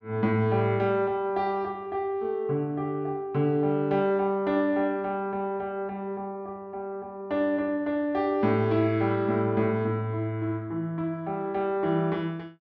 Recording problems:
none

